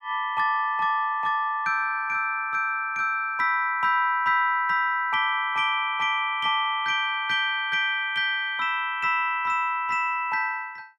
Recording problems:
none

